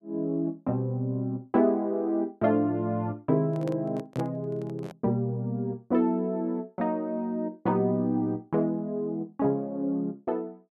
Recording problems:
microphone handling noise; from 3.5 to 5 s; peak -7 dB vs average level

